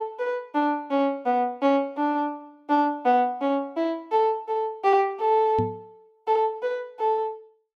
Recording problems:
knock on the microphone; at 5.5 s; peak -1 dB vs average level

